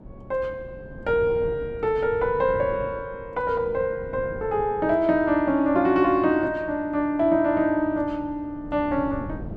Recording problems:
wind on the microphone; below 300 Hz, SNR 17 dB

